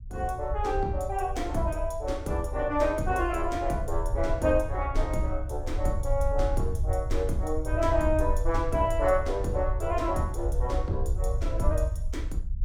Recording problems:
low-frequency rumble; below 72 Hz, SNR 3 dB

